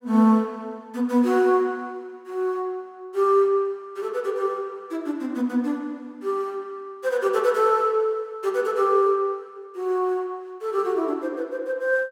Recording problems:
none

